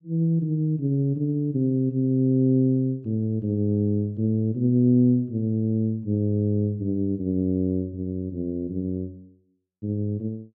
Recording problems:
none

